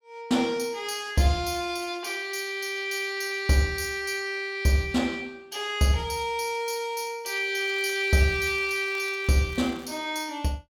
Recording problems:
crackling; from 7.5 to 10 s; loose cable, SNR 24 dB

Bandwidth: 17.5 kHz